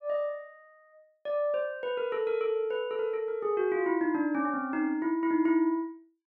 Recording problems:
none

